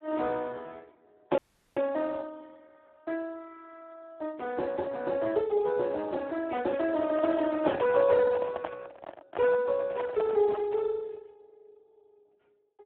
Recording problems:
telephone audio; 280 Hz to 2 kHz, Speex
frozen audio; at 1.5 s
microphone handling noise; from 7 to 11 s; peak -2 dB vs average level

